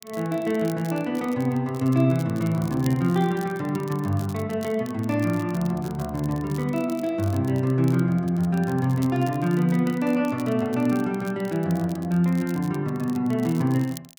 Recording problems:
crackle; vinyl, SNR 22 dB

